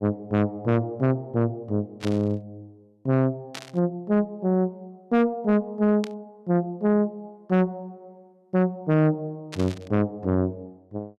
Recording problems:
distortion; soft clipping, signal-to-distortion ratio 10 dB
burst of static; 4 times, first at 2 s; peak -7 dB vs average level

